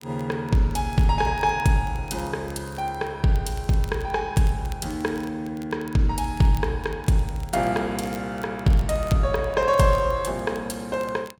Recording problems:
crackle; vinyl, SNR 25 dB

